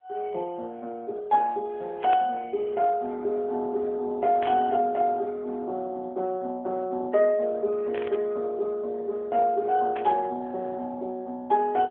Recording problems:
telephone audio; 280 Hz to 3.6 kHz, AMR-NB
static burst; 4 times, first at 2 s; peak -7 dB vs average level

